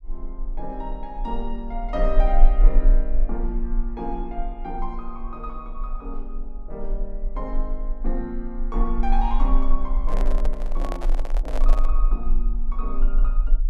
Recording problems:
rumble; below 34 Hz, strongest tone 22 Hz, SNR -6 dB
microphone handling noise; from 10 to 12 s; peak +3 dB vs average level

